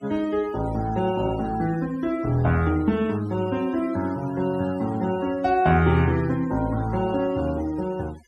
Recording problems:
noise reduction artefacts; signal-to-artefact ratio 21 dB

